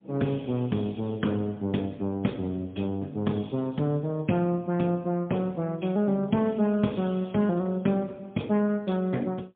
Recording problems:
telephone audio; 130 Hz to 3.6 kHz, AMR-NB, then MP3

